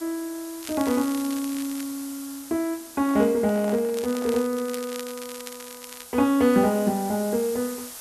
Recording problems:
background hiss; slope 0 dB per octave, SNR 15 dB
crackling; from 0.5 to 2 s and from 4 to 6 s; loose cable, SNR 16 dB
microphone handling noise; from 3 to 4.5 s; peak -8 dB vs average level

